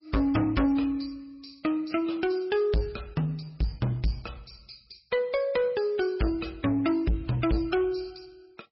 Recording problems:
lossy compression; MP3, log-spectral distance 5 dB, nothing above 5.5 kHz
distorted audio; soft clipping, signal-to-distortion ratio 8 dB

